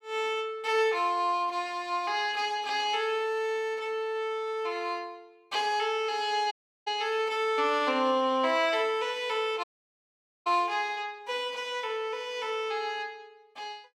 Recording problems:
dropout; at 6.5 s and at 9.5 s for 1 s

